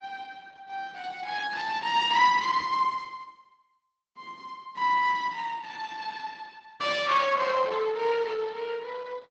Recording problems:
lossy compression; Opus, log-spectral distance 4 dB

